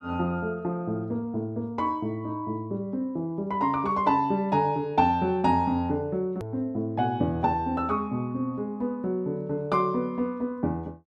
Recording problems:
edit click; at 6.5 s

